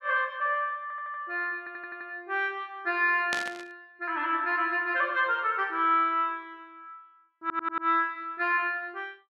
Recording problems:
stutter; at 1 s, at 1.5 s and at 7.5 s
static burst; at 3.5 s; peak 0 dB vs average level

